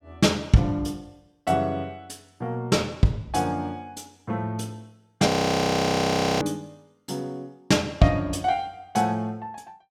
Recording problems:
audio freezing; at 5.5 s for 1 s

